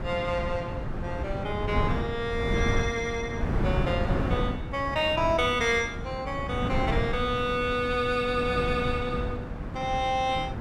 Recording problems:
wind on the microphone; below 270 Hz, SNR 4 dB

